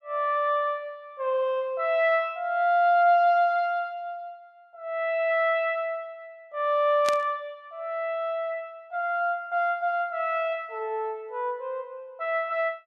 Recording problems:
static burst; at 7 s; peak -1 dB vs average level

